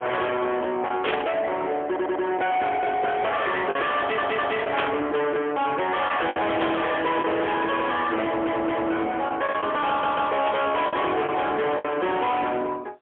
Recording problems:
phone line; 240 Hz to 3.9 kHz, AMR-NB, then MP3
distorted audio; soft clipping, signal-to-distortion ratio 6 dB
packet loss; 3% of the sound replaced, filled with the last packet
static burst; 4 times, first at 1 s; peak +1 dB vs average level
stutter; 4 times, first at 2 s

